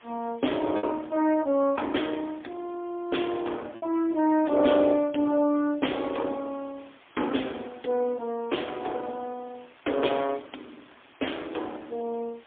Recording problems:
telephone audio; 240 Hz to 3.5 kHz, AMR-NB, then MP3
hiss; SNR 27 dB
packet loss; 1.3% of the sound replaced, filled with repeated pitch periods

